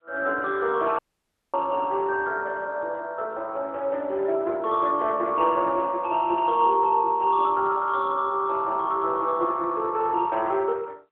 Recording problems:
phone line; 300 Hz to 3.8 kHz, AMR-NB
dropout; at 1 s for 0.5 s

